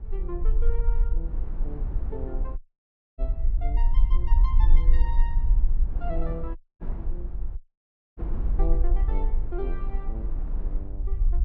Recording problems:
low-frequency rumble; below 42 Hz, strongest tone 20 Hz, SNR -12 dB
wind on the microphone; below 310 Hz, SNR 5 dB
dropout; at 2.5 s for 0.5 s, at 6.5 s and at 7.5 s for 0.5 s

